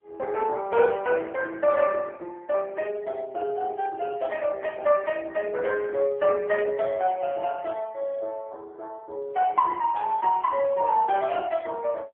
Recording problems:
telephone audio; 340 Hz to 2.3 kHz, AMR-NB

